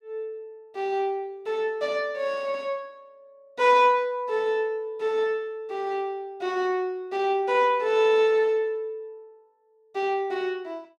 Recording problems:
none

